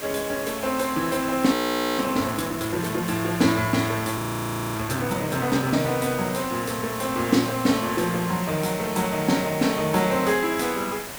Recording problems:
hiss; slope -2 dB per octave, SNR 10 dB
audio freezing; at 1.5 s and at 4 s for 0.5 s

